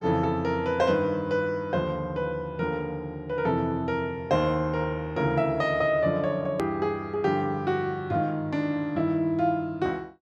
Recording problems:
edit click; at 6.5 s

